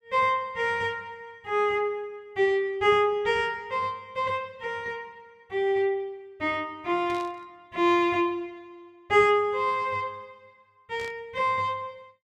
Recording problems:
burst of static; at 7 s and at 11 s; peak -14 dB vs average level

